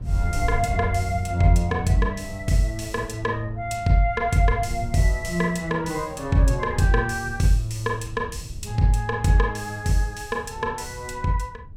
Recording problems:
wind noise; below 100 Hz, SNR 12 dB

